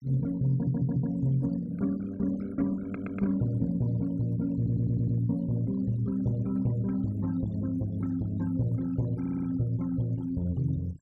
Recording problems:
noise reduction artefacts; signal-to-artefact ratio 24 dB
stutter; 4 times, first at 0.5 s

